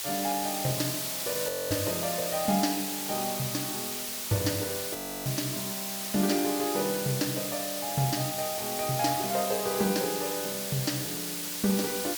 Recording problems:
hiss; slope +2 dB per octave, SNR 1 dB
audio freezing; at 1.5 s and at 5 s

